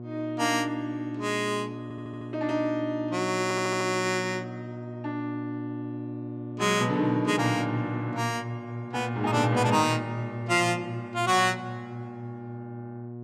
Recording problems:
mains hum; 60 Hz, harmonics up to 720 Hz, SNR 11 dB
stutter; at 2 s and at 3.5 s

